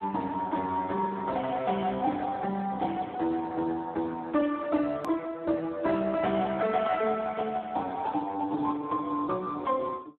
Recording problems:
telephone audio; 150 Hz to 2.2 kHz, Speex
click at an edit; at 5 s

